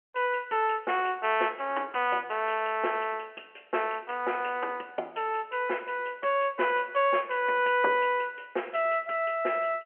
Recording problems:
phone line; 300 Hz to 3.1 kHz, G.711

